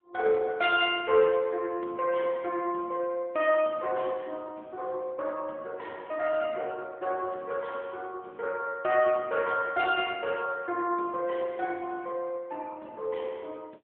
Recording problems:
phone line; 260 Hz to 3.5 kHz, AMR-NB

